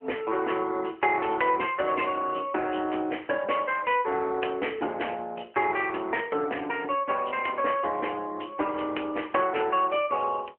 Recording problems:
phone line; 260 Hz to 3.1 kHz, AMR-NB

